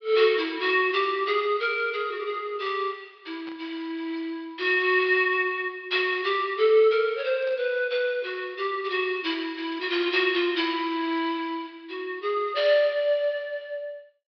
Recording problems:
treble cut off; nothing above 5.5 kHz
static burst; at 3.5 s and at 7.5 s; peak -15 dB vs average level

